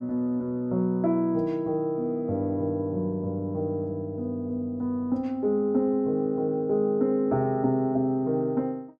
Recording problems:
none

